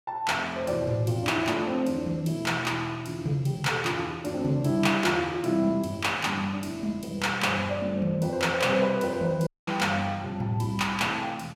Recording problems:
audio cutting out; at 9.5 s

